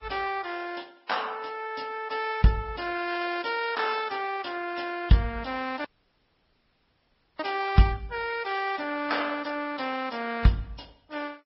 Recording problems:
lossy codec; MP2, then Vorbis, log-spectral distance 5 dB, nothing above 5.5 kHz
dropout; at 6 s for 1.5 s

